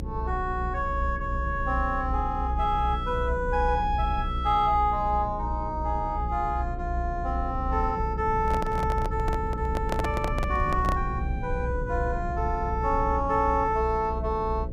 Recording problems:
mains hum; 60 Hz, harmonics up to 540 Hz, SNR 9 dB
rumble; below 74 Hz, strongest tone 34 Hz, SNR 6 dB
microphone handling noise; from 8.5 to 11 s; peak +1 dB vs average level

